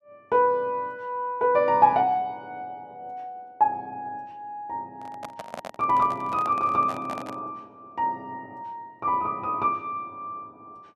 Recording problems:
microphone handling noise; from 5 to 7.5 s; peak -7 dB vs average level

